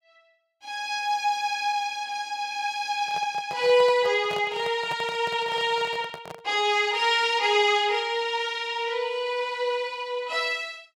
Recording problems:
handling noise; from 3 to 6.5 s; peak -8 dB vs average level

